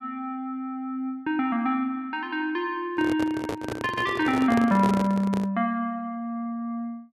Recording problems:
handling noise; from 3 to 5.5 s; peak +1 dB vs average level

